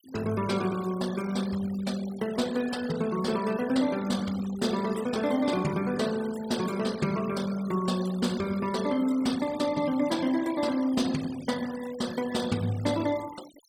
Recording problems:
noise reduction artefacts; signal-to-artefact ratio 16 dB

